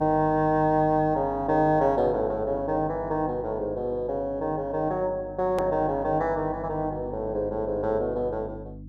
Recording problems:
hum; 50 Hz, harmonics up to 300 Hz, SNR 16 dB
edit click; at 5.5 s

